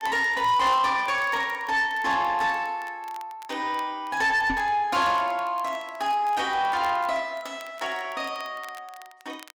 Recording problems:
distorted audio; soft clipping, signal-to-distortion ratio 12 dB
crackling; vinyl, SNR 26 dB
microphone thump; at 4.5 s; peak -1 dB vs average level

